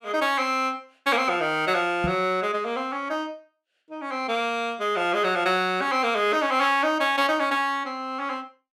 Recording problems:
microphone bump; at 2 s; peak -1 dB vs average level

